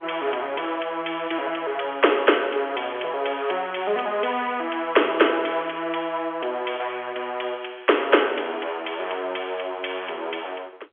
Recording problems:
phone line; 340 Hz to 3.4 kHz, G.711

